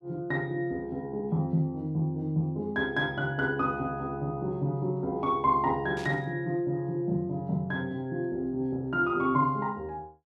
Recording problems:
burst of static; at 6 s; peak -10 dB vs average level

